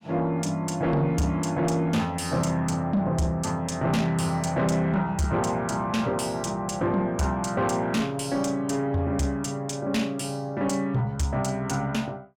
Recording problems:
distortion; soft clipping, signal-to-distortion ratio 11 dB

